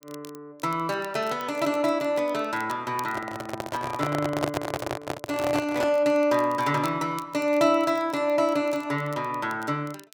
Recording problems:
crackle; vinyl, SNR 24 dB
microphone handling noise; from 3 to 6 s; peak +3 dB vs average level

